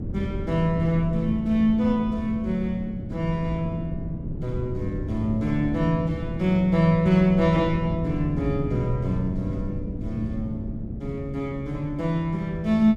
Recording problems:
wind noise; below 200 Hz, SNR 8 dB

